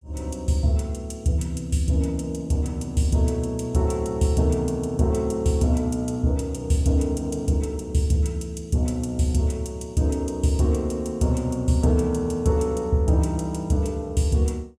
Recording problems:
none

